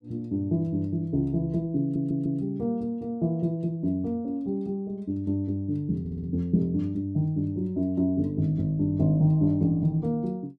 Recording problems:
audio stuttering; at 2 s and at 6 s

